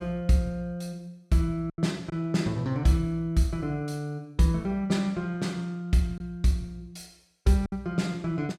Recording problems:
lost packets; 2% of the sound replaced, filled with silence

